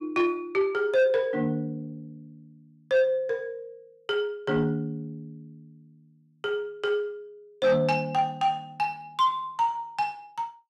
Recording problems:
distortion; soft clipping, signal-to-distortion ratio 10 dB

